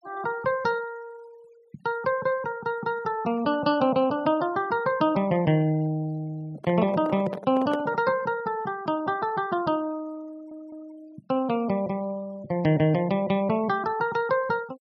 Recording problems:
denoising artefacts; signal-to-artefact ratio 25 dB
handling noise; from 6.5 to 8 s; peak -3 dB vs average level
stutter; at 10 s

